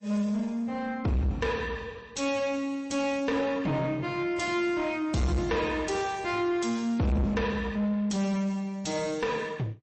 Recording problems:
codec artefacts; MP3, log-spectral distance 2 dB, nothing above 8 kHz
distorted audio; soft clipping, signal-to-distortion ratio 7 dB

